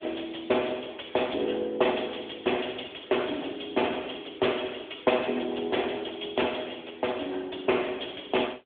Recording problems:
phone line; 260 Hz to 3.5 kHz, AMR-NB

